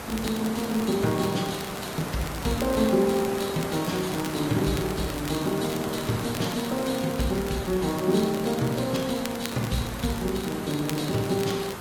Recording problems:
codec artefacts; AAC, log-spectral distance 7 dB
hiss; slope -5 dB per octave, SNR 7 dB
crackle; vinyl, SNR 14 dB

